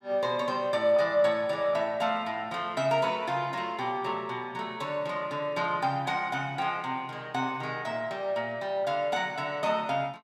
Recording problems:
none

